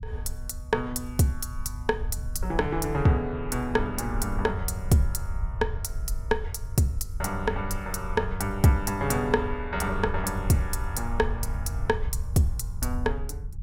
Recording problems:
rumble; below 76 Hz, SNR 7 dB

